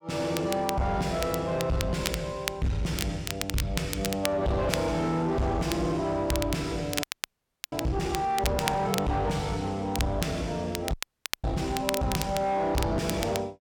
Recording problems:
distorted audio; soft clipping, signal-to-distortion ratio 6 dB
crackle; vinyl, SNR 7 dB
audio freezing; at 7 s for 0.5 s and at 11 s for 0.5 s

